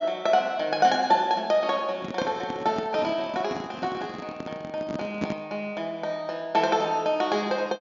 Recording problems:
treble cut off; nothing above 7 kHz
handling noise; from 2 to 5.5 s; peak +1 dB vs average level

